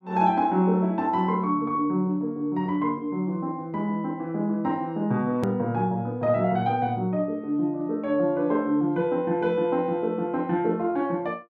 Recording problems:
edit click; at 5.5 s

